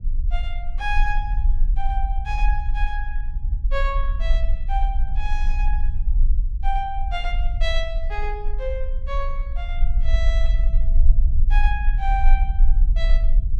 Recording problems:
low-frequency rumble; below 42 Hz, strongest tone 22 Hz, SNR -7 dB

